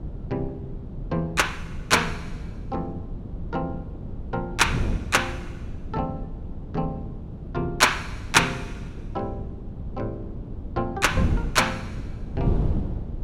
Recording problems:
wind on the microphone; below 180 Hz, SNR 7 dB

